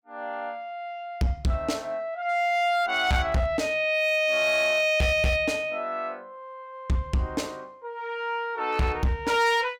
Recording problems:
distorted audio; hard clipping, signal-to-distortion ratio 10 dB

